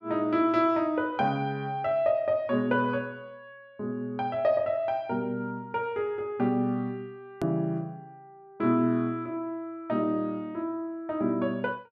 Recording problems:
click at an edit; at 7.5 s

